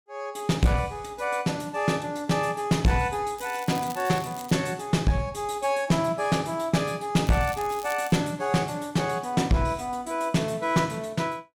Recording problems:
distorted audio; hard clipping, uneven, signal-to-distortion ratio 10 dB
crackling; from 3.5 to 4.5 s and at 7.5 s; loose cable, SNR 17 dB

